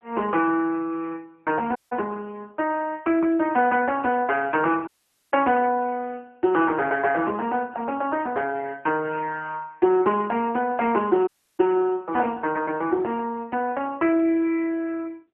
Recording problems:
phone line; 260 Hz to 2.8 kHz, AMR-NB
dropout; at 2 s, at 5 s and at 11 s

